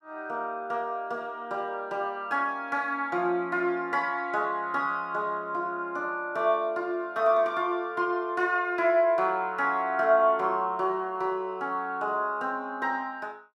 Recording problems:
none

